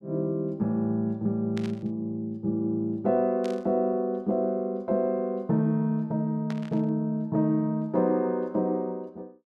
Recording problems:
static burst; at 1.5 s, at 3.5 s and at 6.5 s; peak -9 dB vs average level

